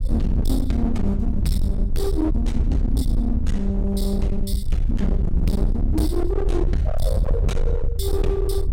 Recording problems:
distorted audio; hard clipping, signal-to-distortion ratio 7 dB
rumble; below 72 Hz, SNR -1 dB

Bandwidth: 16 kHz